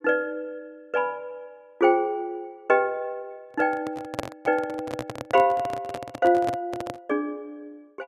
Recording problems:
microphone handling noise; from 3.5 to 7 s; peak +1 dB vs average level

